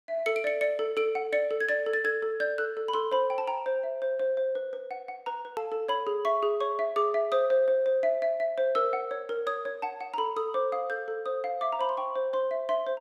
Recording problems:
edit click; at 5.5 s

